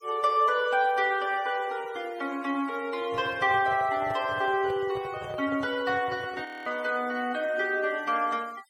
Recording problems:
denoising artefacts; signal-to-artefact ratio 24 dB
handling noise; from 3 to 6.5 s; peak -9 dB vs average level
frozen audio; at 6.5 s

